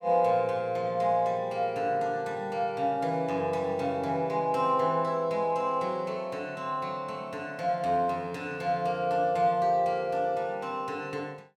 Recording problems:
none

